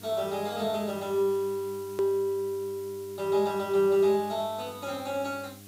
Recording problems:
electrical hum; 50 Hz, harmonics up to 1.1 kHz, SNR 21 dB
hiss; slope +4 dB per octave, SNR 21 dB
edit click; at 2 s

